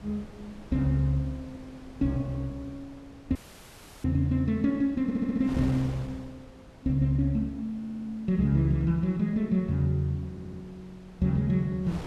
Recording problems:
wind on the microphone; below 600 Hz, SNR 19 dB
dropout; at 3.5 s for 0.5 s
audio stuttering; at 5 s, at 8 s and at 10 s

